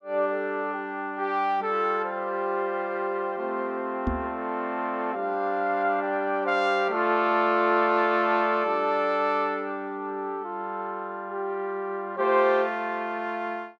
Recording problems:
microphone bump; at 4 s; peak +2 dB vs average level

